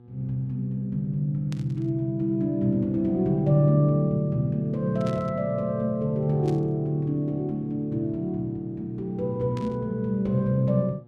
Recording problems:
hum; 60 Hz, harmonics up to 840 Hz, SNR 25 dB
burst of static; 4 times, first at 1.5 s; peak -13 dB vs average level

